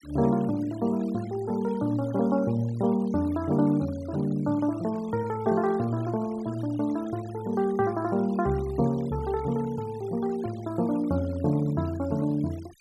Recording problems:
noise reduction artefacts; signal-to-artefact ratio 22 dB

